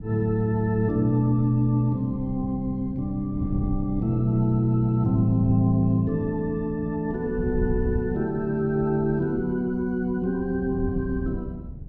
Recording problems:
wind noise; below 140 Hz, SNR 11 dB

